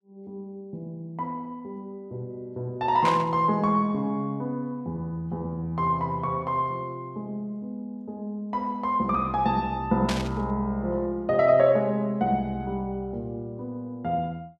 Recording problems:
static burst; at 3 s and at 10 s; peak 0 dB vs average level

